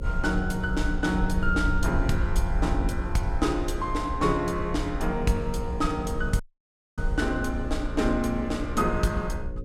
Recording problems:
hum; 60 Hz, harmonics up to 540 Hz, SNR 13 dB
wind on the microphone; below 64 Hz, SNR 5 dB
audio cutting out; at 6.5 s for 0.5 s

